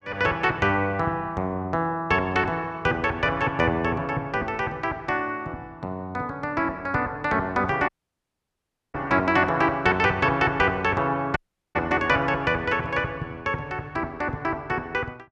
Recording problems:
dropout; at 8 s for 1 s and at 11 s

